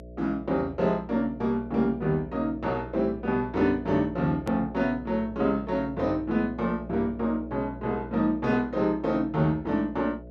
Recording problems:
electrical hum; 60 Hz, harmonics up to 660 Hz, SNR 16 dB
edit click; at 4.5 s

